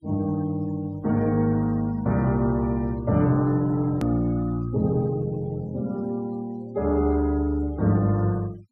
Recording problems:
denoising artefacts; signal-to-artefact ratio 26 dB
click at an edit; at 4 s

